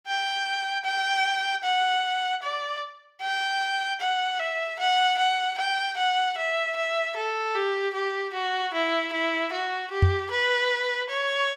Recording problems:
knock on the microphone; at 10 s; peak +9 dB vs average level

